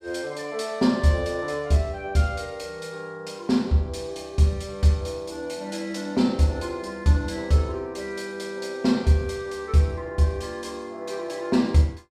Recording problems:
none

